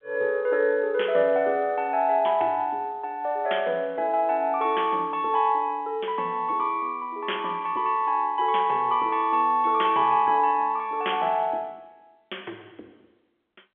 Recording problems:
telephone audio; 300 Hz to 3.4 kHz, G.711

